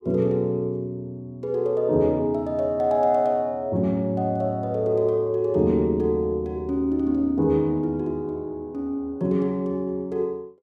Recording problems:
none

